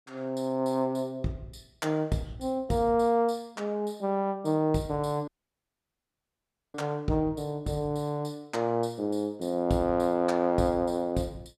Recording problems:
dropout; at 5.5 s for 1.5 s

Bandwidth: 15 kHz